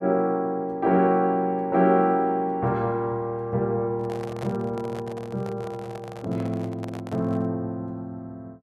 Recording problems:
handling noise; from 4 to 7.5 s; peak -7 dB vs average level

